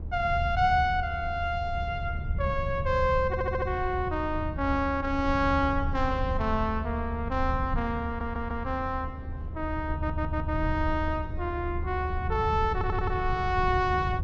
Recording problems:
treble missing; nothing above 8 kHz
low-frequency rumble; below 88 Hz, SNR 5 dB
wind on the microphone; below 200 Hz, SNR 14 dB
audio stuttering; 4 times, first at 3.5 s

